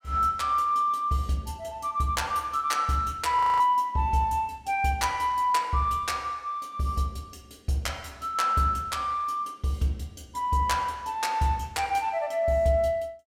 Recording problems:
audio freezing; at 3.5 s

